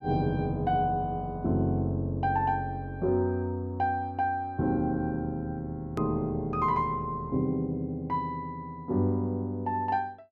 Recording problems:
edit click; at 6 s

